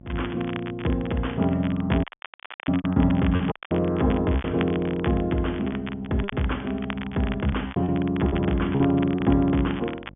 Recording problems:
treble missing; nothing above 3.5 kHz
hum; 50 Hz, harmonics up to 650 Hz, SNR 23 dB
crackling; vinyl, SNR 15 dB
lost packets; 8% of the sound replaced, filled with repeated pitch periods
audio cutting out; at 2 s for 0.5 s and at 3.5 s

